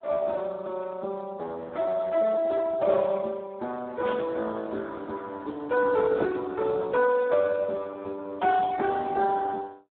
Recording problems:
telephone audio; 260 Hz to 3 kHz, Speex
burst of static; at 4 s; peak -9 dB vs average level

